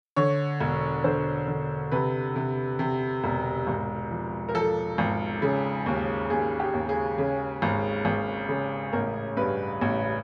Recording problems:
none

